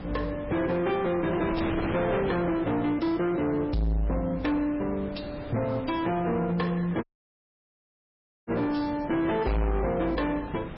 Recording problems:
codec artefacts; MP3, log-spectral distance 3 dB, nothing above 5.3 kHz
distortion; soft clipping, signal-to-distortion ratio 6 dB
wind on the microphone; below 800 Hz, SNR 11 dB
audio cutting out; at 7 s for 1.5 s

